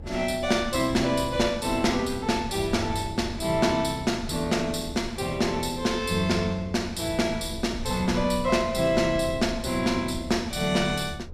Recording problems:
low-frequency rumble; below 120 Hz, SNR 14 dB

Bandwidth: 15 kHz